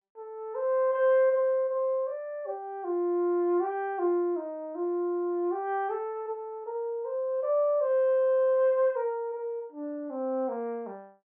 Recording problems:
treble missing; nothing above 3.2 kHz

